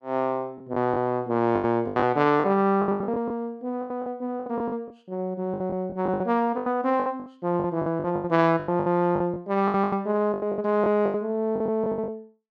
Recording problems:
lost packets; 18% of the sound replaced, filled with the last packet

